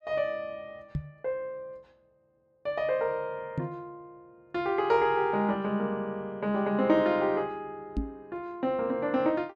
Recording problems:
microphone bump; at 1 s, at 3.5 s and at 8 s; peak +2 dB vs average level

